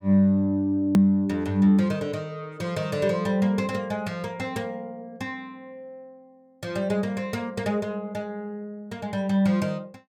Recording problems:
click at an edit; at 1 s

